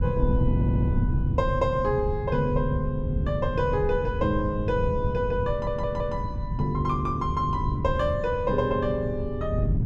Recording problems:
wind on the microphone; below 140 Hz, SNR 3 dB
stutter; at 0.5 s and at 5.5 s

